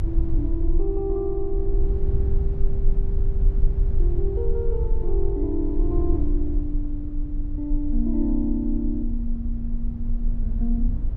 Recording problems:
low-frequency rumble; below 50 Hz, strongest tone 24 Hz, SNR -3 dB

